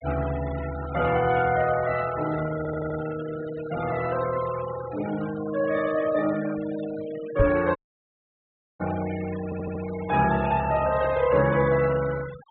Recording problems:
treble missing; nothing above 4 kHz
noise reduction artefacts; signal-to-artefact ratio 14 dB
audio stuttering; at 2.5 s and at 9.5 s
microphone bump; at 7.5 s; peak +5 dB vs average level
dropout; at 8 s for 1 s

